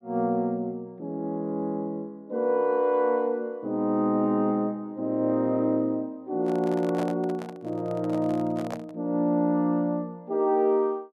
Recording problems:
microphone handling noise; from 6.5 to 9 s; peak -4 dB vs average level

